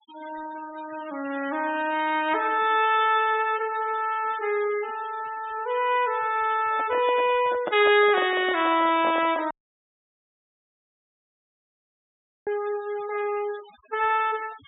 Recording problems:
treble cut off; nothing above 4 kHz
noise reduction artefacts; signal-to-artefact ratio 20 dB
handling noise; from 6.5 to 9.5 s; peak -2 dB vs average level
audio cutting out; at 9.5 s for 3 s

